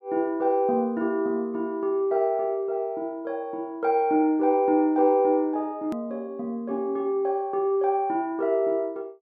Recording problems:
click at an edit; at 6 s

